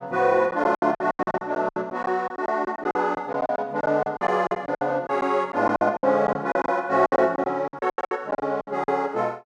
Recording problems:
lost packets; 18% of the sound replaced, filled with silence

